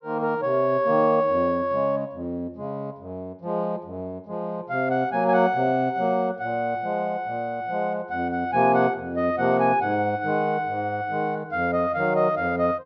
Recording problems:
treble missing; nothing above 6 kHz

